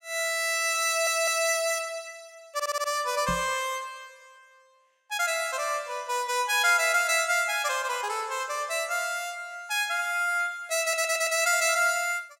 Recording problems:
audio stuttering; at 1 s, at 2.5 s and at 11 s
microphone bump; at 3.5 s; peak -4 dB vs average level

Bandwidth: 16.5 kHz